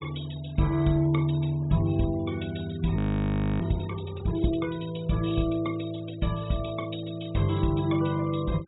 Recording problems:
treble missing; nothing above 4 kHz
noise reduction artefacts; signal-to-artefact ratio 20 dB
audio freezing; at 3 s for 0.5 s

